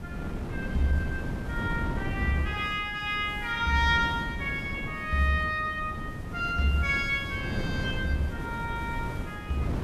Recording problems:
hiss; slope -3 dB per octave, SNR 25 dB
wind on the microphone; below 280 Hz, SNR 7 dB

